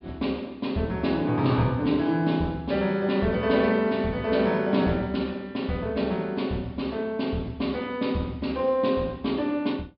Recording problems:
treble cut off; nothing above 5.5 kHz

